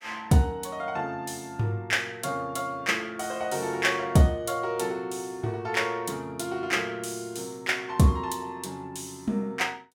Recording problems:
none

